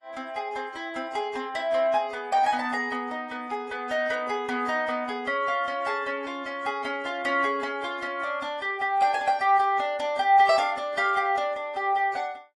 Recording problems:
codec artefacts; AAC, log-spectral distance 2 dB

